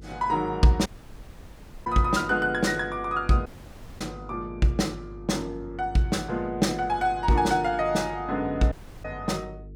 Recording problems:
hum; 50 Hz, harmonics up to 450 Hz, SNR 18 dB
audio cutting out; at 1 s for 1 s, at 3.5 s for 0.5 s and at 8.5 s

